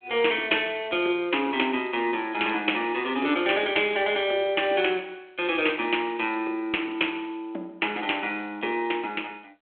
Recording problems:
telephone audio; 280 Hz to 3.4 kHz, G.726

